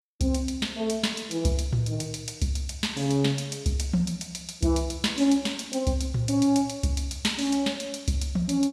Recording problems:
none

